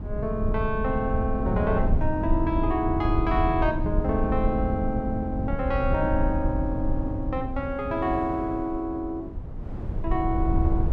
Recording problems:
rumble; below 110 Hz, SNR 2 dB
wind noise; below 380 Hz, SNR 18 dB

